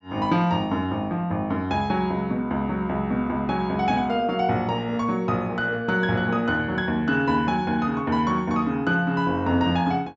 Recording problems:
low-pass filter; nothing above 8 kHz

